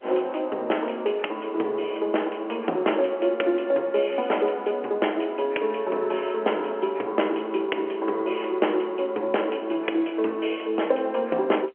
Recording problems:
telephone audio; 280 Hz to 3.2 kHz, G.711

